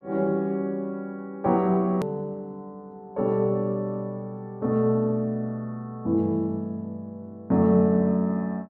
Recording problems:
click at an edit; at 2 s

